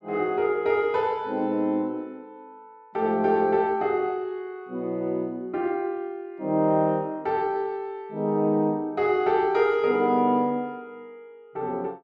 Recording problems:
none

